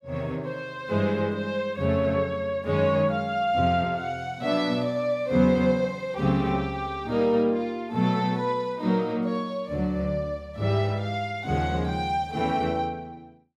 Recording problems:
none

